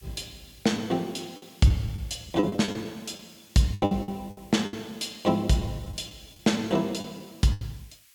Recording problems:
background hiss; SNR 26 dB
packet loss; 12% of the sound replaced, filled with the last packet

